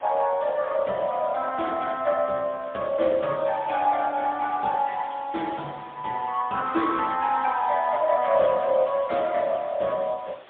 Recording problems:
telephone audio; 220 Hz to 3.6 kHz, AMR-NB, then MP3
background hiss; SNR 22 dB

